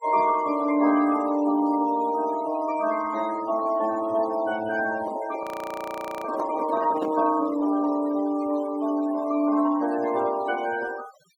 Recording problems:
denoising artefacts; signal-to-artefact ratio 16 dB
microphone handling noise; from 5 to 7.5 s; peak -4 dB vs average level
audio freezing; at 5.5 s for 1 s

